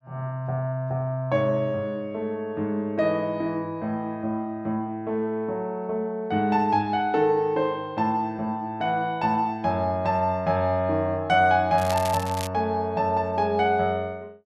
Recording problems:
crackle; at 12 s; loose cable, SNR 12 dB

